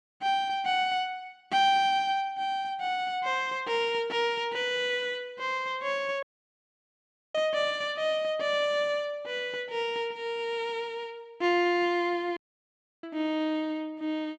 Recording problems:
dropout; at 6 s for 1 s and at 12 s for 0.5 s

